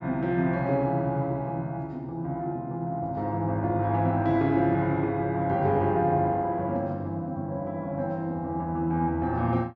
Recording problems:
low-pass filter; nothing above 8 kHz

